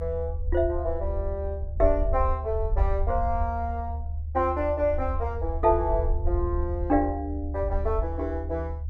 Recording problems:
low-frequency rumble; below 76 Hz, SNR 3 dB

